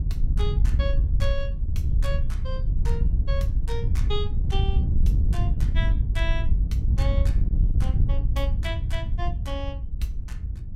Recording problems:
wind noise; below 78 Hz, SNR -10 dB

